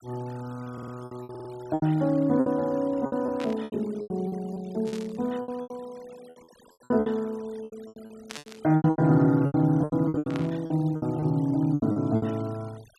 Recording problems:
noise reduction artefacts; signal-to-artefact ratio 26 dB
lost packets; 16% of the sound replaced, filled with repeated pitch periods
audio stuttering; at 0.5 s and at 1.5 s
static burst; 4 times, first at 3.5 s; peak -7 dB vs average level

